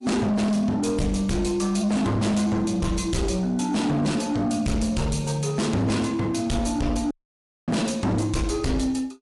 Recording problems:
lossy compression; MP3, log-spectral distance 3 dB, nothing above 11 kHz
distortion; soft clipping, signal-to-distortion ratio 8 dB
audio cutting out; at 7 s for 0.5 s

